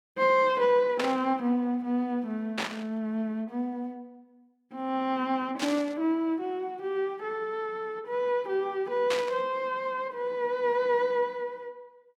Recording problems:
burst of static; 4 times, first at 1 s; peak +2 dB vs average level

